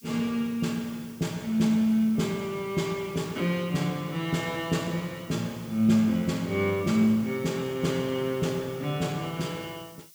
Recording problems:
background hiss; slope +7 dB per octave, SNR 23 dB

